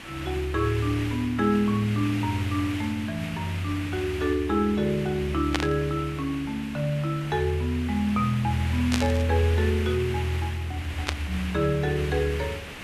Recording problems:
hiss; SNR 11 dB
static burst; at 5.5 s, at 9 s and at 11 s; peak +4 dB vs average level

